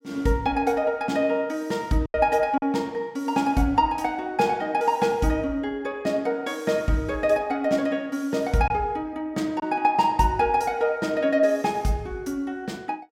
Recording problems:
packet loss; 1.2% of the sound replaced, filled with silence

